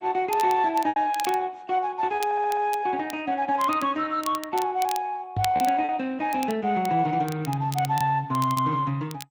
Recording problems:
lossy codec; Speex, then MP2, log-spectral distance 3 dB
crackling; vinyl, SNR 16 dB
lost packets; 3% of the sound replaced, filled with repeated pitch periods
audio stuttering; at 2.5 s
microphone thump; at 5.5 s; peak -2 dB vs average level

